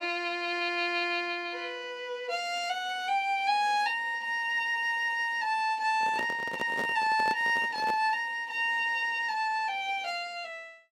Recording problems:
microphone handling noise; from 6 to 8 s; peak -4 dB vs average level

